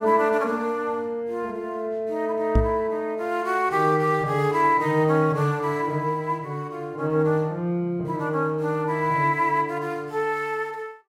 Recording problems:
microphone thump; at 2.5 s; peak +7 dB vs average level

